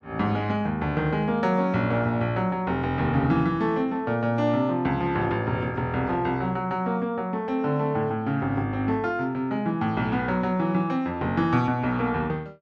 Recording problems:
none

